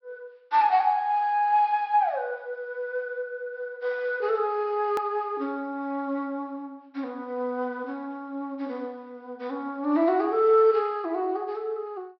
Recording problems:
low-pass filter; nothing above 5.5 kHz
click at an edit; at 5 s

